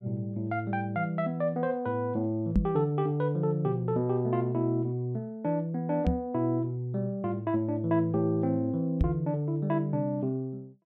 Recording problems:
microphone thump; at 2.5 s, at 6 s and at 9 s; peak +8 dB vs average level

